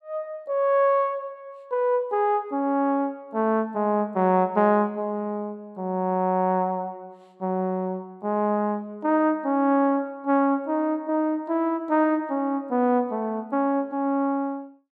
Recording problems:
none

